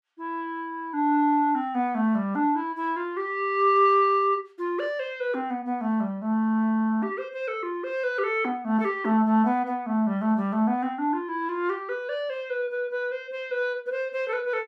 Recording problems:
none

